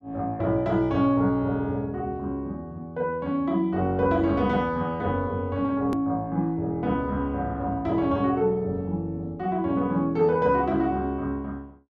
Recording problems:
click at an edit; at 6 s

